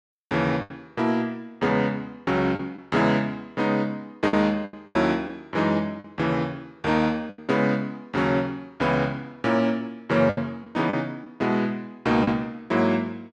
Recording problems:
packet loss; 5% of the sound replaced, filled with the last packet

